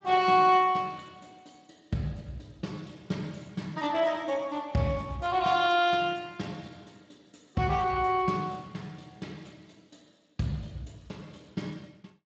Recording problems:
lossy codec; Speex, log-spectral distance 5 dB

